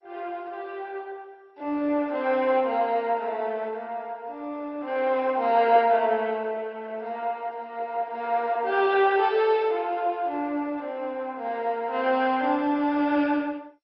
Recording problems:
lossy compression; MP2, log-spectral distance 2 dB, nothing above 5.3 kHz

